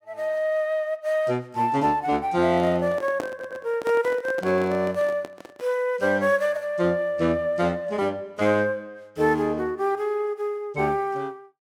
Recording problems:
microphone handling noise; from 2.5 to 5.5 s; peak -3 dB vs average level
audio stuttering; at 3.5 s

